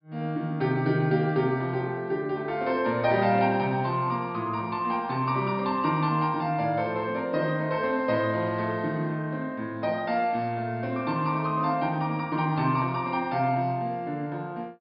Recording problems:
low-pass filter; nothing above 5.5 kHz

